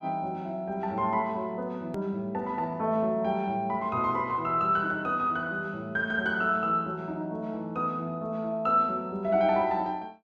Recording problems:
edit click; at 2 s

